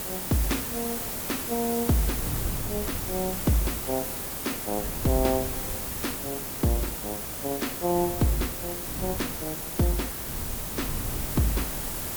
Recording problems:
background hiss; slope -3 dB per octave, SNR 1 dB
wind noise; below 180 Hz, SNR 9 dB

